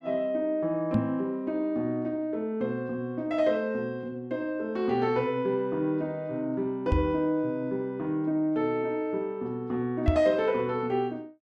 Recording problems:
knock on the microphone; at 1 s, at 7 s and at 10 s; peak +8 dB vs average level

